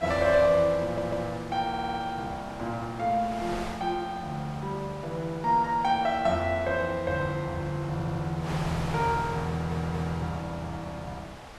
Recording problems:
wind noise; below 2 kHz, SNR 13 dB
stutter; 4 times, first at 1 s

